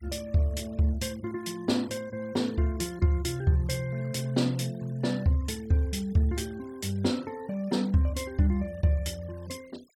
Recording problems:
denoising artefacts; signal-to-artefact ratio 25 dB

